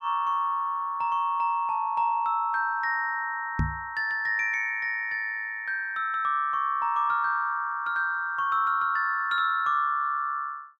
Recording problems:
knock on the microphone; at 3.5 s; peak +2 dB vs average level

